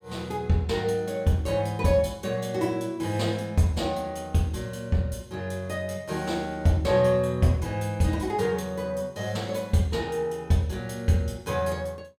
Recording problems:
none

